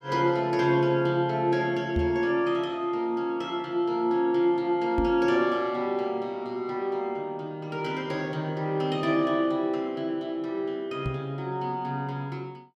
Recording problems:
knock on the microphone; at 2 s, at 5 s and at 11 s; peak +1 dB vs average level

